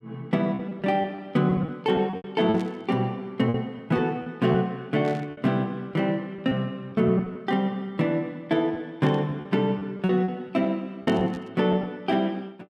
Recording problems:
lost packets; 8% of the sound replaced, filled with repeated pitch periods
burst of static; 4 times, first at 2.5 s; peak -12 dB vs average level

